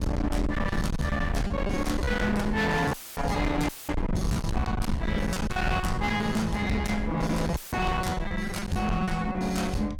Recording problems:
distortion; hard clipping, uneven, signal-to-distortion ratio 6 dB
wind on the microphone; below 170 Hz, SNR 6 dB
packet loss; 9% of the sound replaced, filled with repeated pitch periods
dropout; at 3 s, at 3.5 s and at 7.5 s; filled with static

